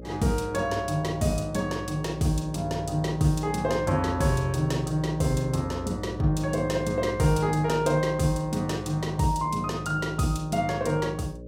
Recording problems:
hum; 60 Hz, harmonics up to 600 Hz, SNR 12 dB

